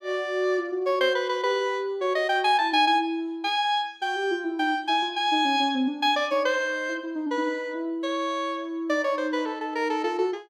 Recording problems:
none

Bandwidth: 14.5 kHz